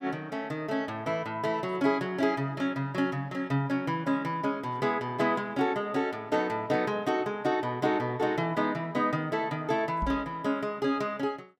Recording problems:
microphone bump; at 10 s; peak -2 dB vs average level

